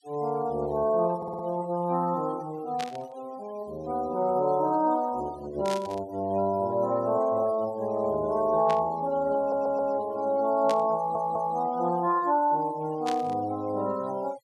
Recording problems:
denoising artefacts; signal-to-artefact ratio 22 dB
audio stuttering; at 1 s, at 9.5 s and at 11 s
burst of static; 5 times, first at 3 s; peak -5 dB vs average level

